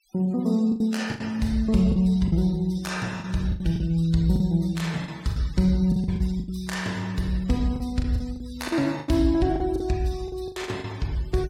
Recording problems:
noise reduction artefacts; signal-to-artefact ratio 23 dB
packet loss; 11% of the sound replaced, filled with the last packet

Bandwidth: 16.5 kHz